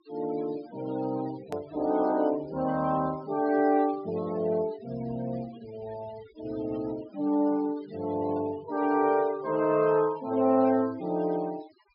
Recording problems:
treble cut off; nothing above 5.5 kHz
denoising artefacts; signal-to-artefact ratio 20 dB
click at an edit; at 1.5 s

